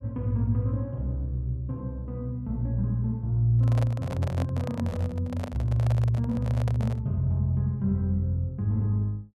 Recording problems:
handling noise; from 3.5 to 7 s; peak -5 dB vs average level

